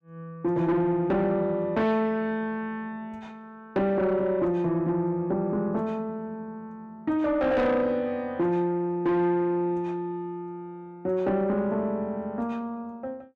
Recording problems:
distorted audio; soft clipping, signal-to-distortion ratio 11 dB

